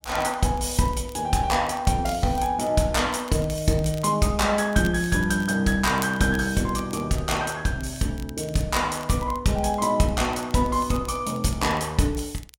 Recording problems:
crackle; vinyl, SNR 22 dB

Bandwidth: 16.5 kHz